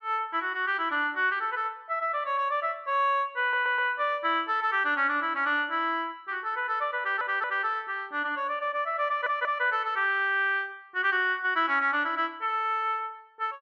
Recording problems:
stutter; at 3.5 s, at 7 s and at 9 s

